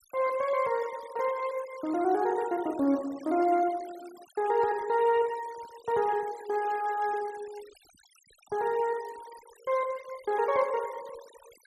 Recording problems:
denoising artefacts; signal-to-artefact ratio 21 dB

